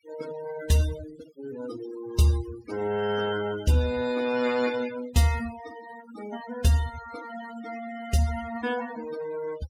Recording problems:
noise reduction artefacts; signal-to-artefact ratio 14 dB

